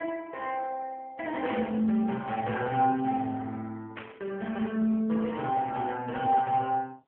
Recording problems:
telephone audio; 280 Hz to 3.1 kHz, AMR-NB
burst of static; at 1.5 s and at 4 s; peak -5 dB vs average level

